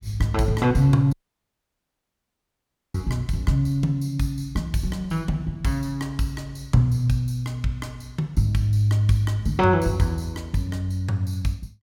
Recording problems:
audio cutting out; at 1 s for 2 s

